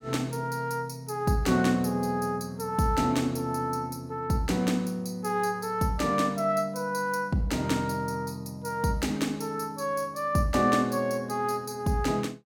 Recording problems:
none

